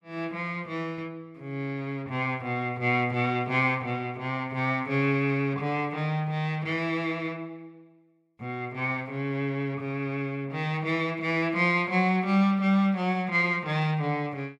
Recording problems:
none

